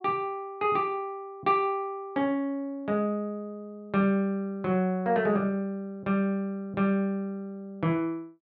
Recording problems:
none

